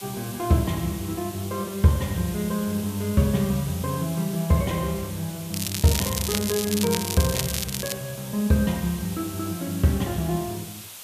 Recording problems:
background hiss; slope +2 dB per octave, SNR 13 dB
crackling; from 5.5 to 8 s; loose cable, SNR 3 dB

